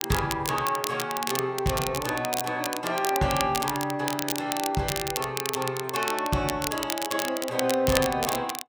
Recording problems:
crackling; vinyl, SNR 4 dB

